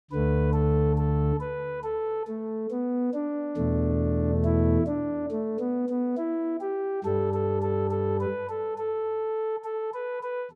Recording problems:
none

